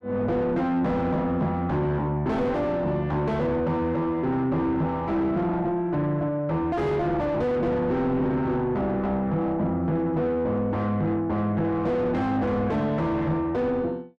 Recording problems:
distortion; soft clipping, signal-to-distortion ratio 6 dB

